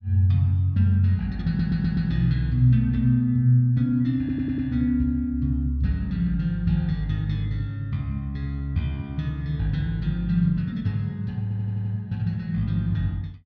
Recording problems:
audio stuttering; at 1.5 s, at 4 s and at 11 s

